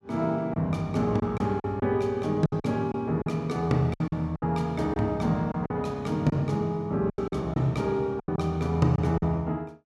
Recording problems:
packet loss; 9% of the sound replaced, filled with silence

